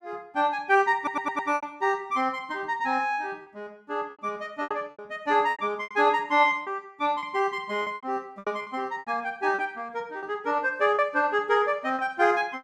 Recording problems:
packet loss; 9% of the sound replaced, filled with repeated pitch periods
audio stuttering; at 1 s

